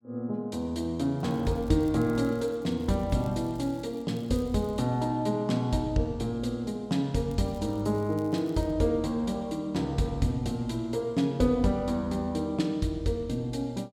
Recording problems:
crackling; from 1 to 5 s and from 7.5 to 8.5 s; loose cable, SNR 28 dB

